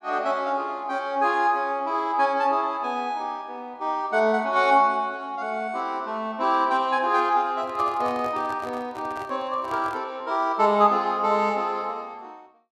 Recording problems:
microphone handling noise; from 7.5 to 10 s; peak -10 dB vs average level

